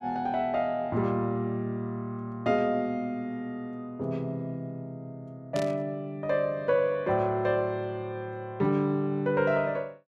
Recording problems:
burst of static; at 5.5 s; peak -6 dB vs average level

